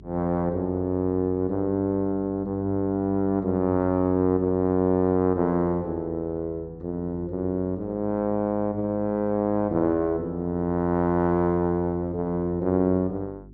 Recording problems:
treble missing; nothing above 8 kHz
electrical hum; 50 Hz, harmonics up to 400 Hz, SNR 22 dB

